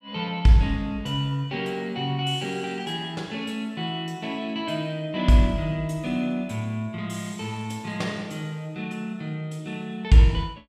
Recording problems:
none

